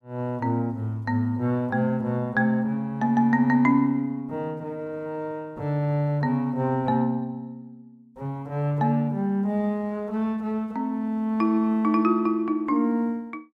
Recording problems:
none

